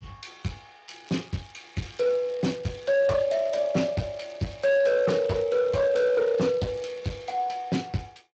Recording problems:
codec artefacts; Speex, log-spectral distance 6 dB
distorted audio; hard clipping, signal-to-distortion ratio 11 dB
crackling; from 1 to 7.5 s; loose cable, SNR 27 dB

